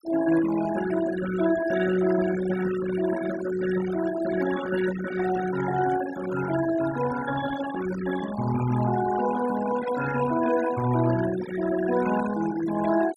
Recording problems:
denoising artefacts; signal-to-artefact ratio 10 dB

